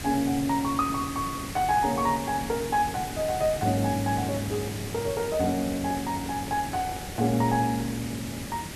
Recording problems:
hiss; SNR 8 dB
handling noise; from 4 to 7.5 s; peak -11 dB vs average level

